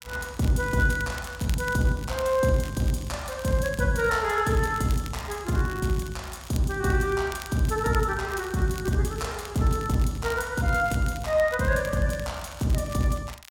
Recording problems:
crackle; vinyl, SNR 18 dB

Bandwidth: 16.5 kHz